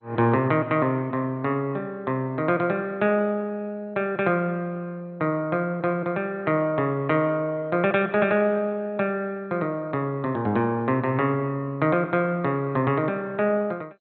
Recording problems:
lossy codec; MP2, log-spectral distance 2 dB, nothing above 3.9 kHz

